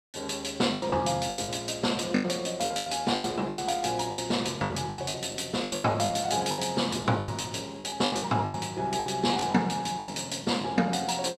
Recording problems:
packet loss; 16% of the sound replaced, filled with the last packet

